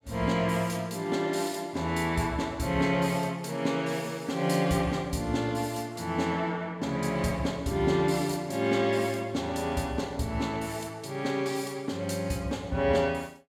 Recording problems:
none

